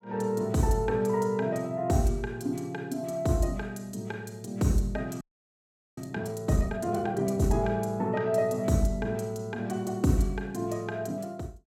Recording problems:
frozen audio; at 5 s for 1 s

